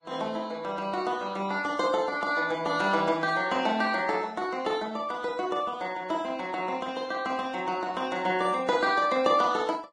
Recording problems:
codec artefacts; Vorbis, log-spectral distance 3 dB

